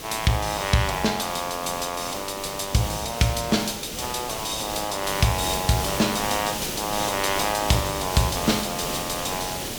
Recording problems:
background hiss; SNR 5 dB

